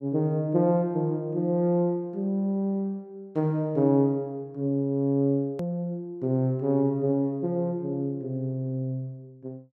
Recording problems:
edit click; at 5.5 s

